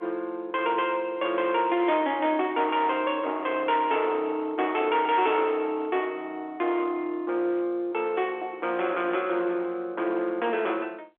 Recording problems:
phone line; 260 Hz to 3.5 kHz, G.711
distortion; hard clipping, uneven, signal-to-distortion ratio 13 dB

